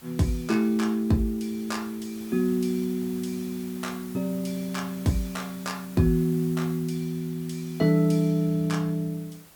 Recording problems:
background hiss; slope -2 dB per octave, SNR 19 dB

